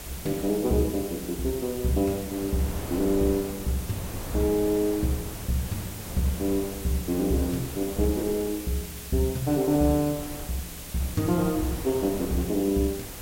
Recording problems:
background hiss; slope +3 dB per octave, SNR 12 dB
wind on the microphone; below 570 Hz, SNR 13 dB

